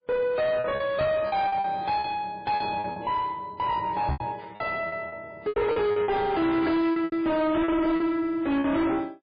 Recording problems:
lossy compression; MP3, log-spectral distance 2 dB, nothing above 4.2 kHz
distortion; soft clipping, signal-to-distortion ratio 7 dB
packet loss; 12% of the sound replaced, filled with repeated pitch periods
knock on the microphone; at 1 s and at 4 s; peak +1 dB vs average level

